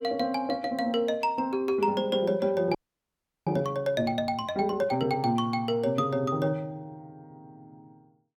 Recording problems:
frozen audio; at 3 s for 0.5 s

